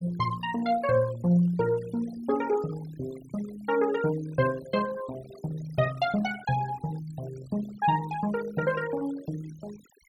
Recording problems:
noise reduction artefacts; signal-to-artefact ratio 18 dB

